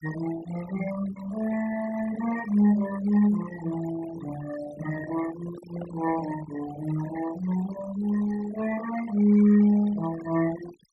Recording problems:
denoising artefacts; signal-to-artefact ratio 13 dB
handling noise; from 5 to 6.5 s; peak -11 dB vs average level

